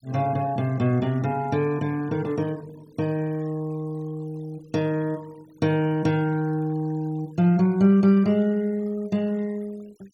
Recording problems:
denoising artefacts; signal-to-artefact ratio 27 dB

